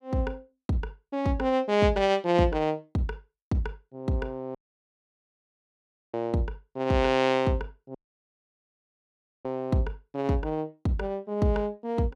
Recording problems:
dropout; at 4.5 s for 1.5 s and at 8 s for 1.5 s

